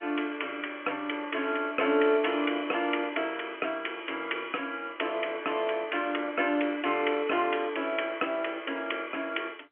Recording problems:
phone line; 220 Hz to 3.2 kHz, G.711

